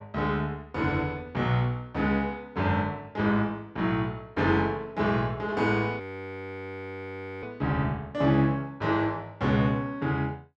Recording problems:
audio freezing; at 6 s for 1.5 s

